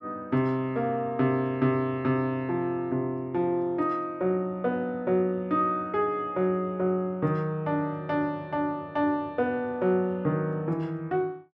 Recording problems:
none

